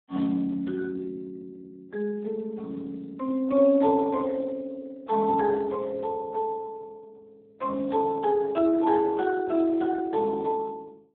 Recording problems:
telephone audio; 190 Hz to 2.1 kHz, Speex

